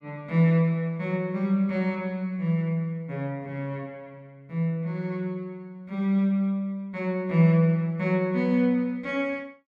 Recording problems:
none

